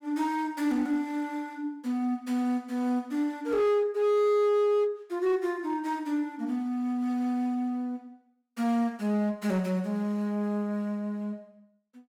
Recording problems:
distorted audio; hard clipping, uneven, signal-to-distortion ratio 11 dB

